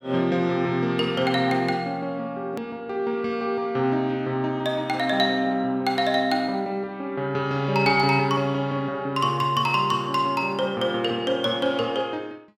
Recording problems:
click at an edit; at 2.5 s

